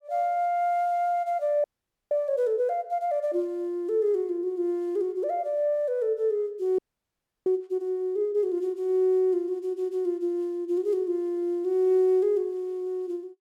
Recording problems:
audio freezing; at 1.5 s and at 7 s for 0.5 s

